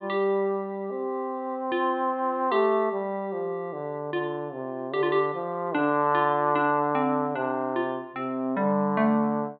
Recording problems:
treble cut off; nothing above 4.4 kHz

